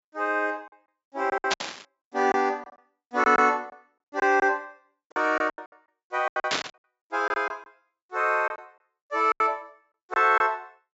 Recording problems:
low-pass filter; nothing above 8 kHz
packet loss; 13% of the sound replaced, filled with silence
static burst; at 1.5 s and at 6.5 s; peak +5 dB vs average level

